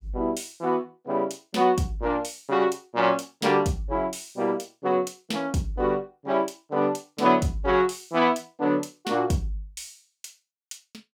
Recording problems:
none

